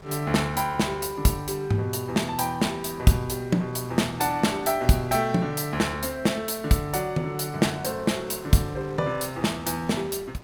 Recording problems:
wind noise; below 1.2 kHz, SNR 21 dB

